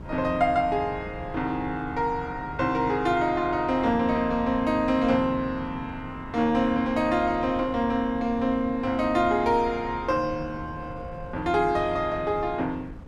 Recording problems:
wind on the microphone; below 230 Hz, SNR 16 dB

